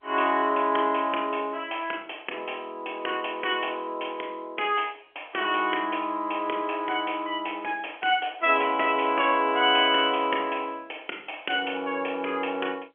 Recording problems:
telephone audio; 240 Hz to 3.3 kHz, G.711

